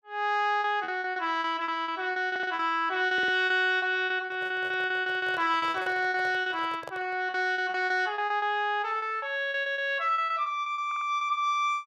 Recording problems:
lost packets; 16% of the sound replaced, filled with repeated pitch periods
stutter; at 2.5 s, at 3 s and at 11 s
handling noise; from 4.5 to 7.5 s; peak -8 dB vs average level

